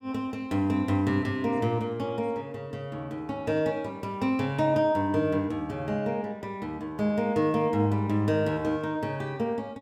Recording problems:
none

